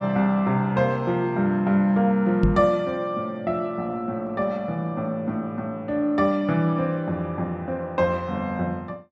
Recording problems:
microphone bump; at 2.5 s; peak +7 dB vs average level

